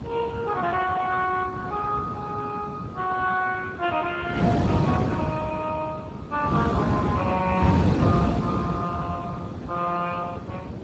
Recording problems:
codec artefacts; Speex, log-spectral distance 4 dB
wind noise; below 380 Hz, SNR 0 dB

